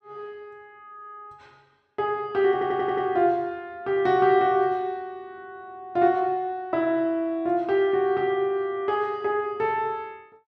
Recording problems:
stutter; at 2.5 s

